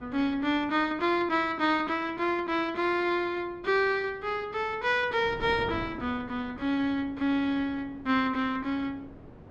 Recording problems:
wind noise; below 460 Hz, SNR 19 dB

